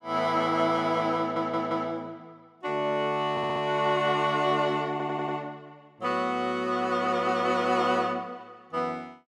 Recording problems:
stutter; at 1 s, at 3.5 s and at 5 s

